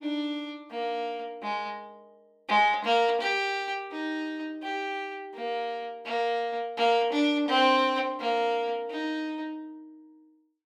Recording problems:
none

